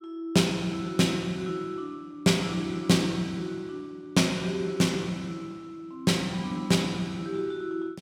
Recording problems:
none

